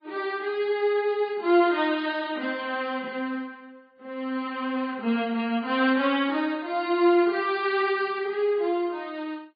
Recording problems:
codec artefacts; MP3, log-spectral distance 2 dB, nothing above 4.8 kHz

